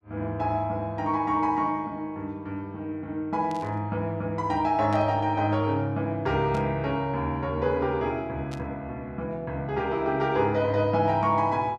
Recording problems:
static burst; 4 times, first at 3.5 s; peak -12 dB vs average level

